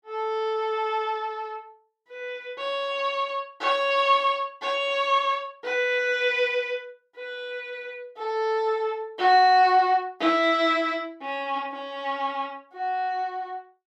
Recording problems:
none

